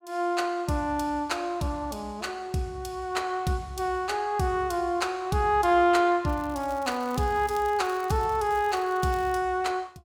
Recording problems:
crackle; from 6.5 to 9.5 s; loose cable, SNR 23 dB

